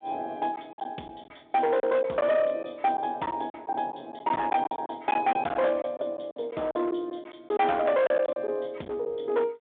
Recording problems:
telephone audio; 990 Hz to 3.4 kHz, G.726
distortion; hard clipping, signal-to-distortion ratio 12 dB
lost packets; 9% of the sound replaced, filled with silence

